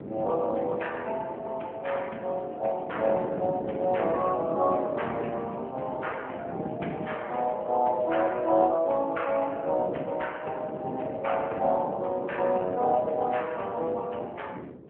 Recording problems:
telephone audio; 260 Hz to 3.2 kHz, AMR-NB
wind noise; below 440 Hz, SNR 11 dB

